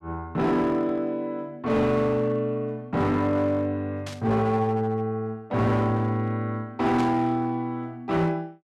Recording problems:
distortion; hard clipping, signal-to-distortion ratio 11 dB
burst of static; at 4 s and at 7 s; peak -8 dB vs average level

